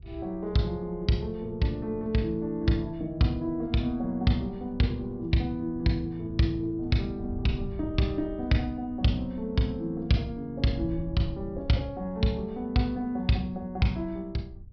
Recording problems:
treble cut off; nothing above 5.5 kHz
wind noise; below 100 Hz, SNR 15 dB

